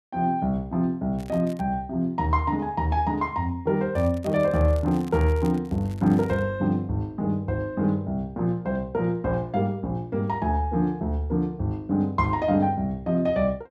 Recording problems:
crackling; at 1 s and from 4 to 6.5 s; loose cable, SNR 26 dB

